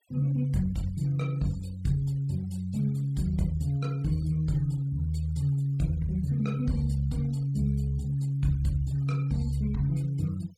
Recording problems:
denoising artefacts; signal-to-artefact ratio 26 dB

